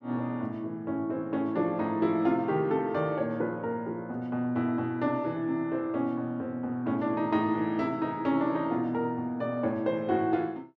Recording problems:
none

